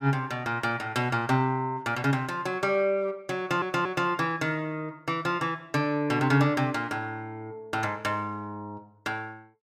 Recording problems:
stutter; at 3.5 s

